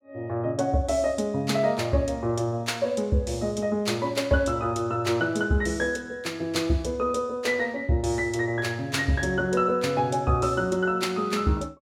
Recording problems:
none

